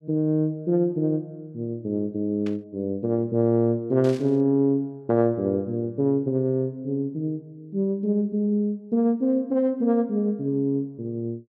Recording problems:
static burst; at 2.5 s and at 4 s; peak -13 dB vs average level

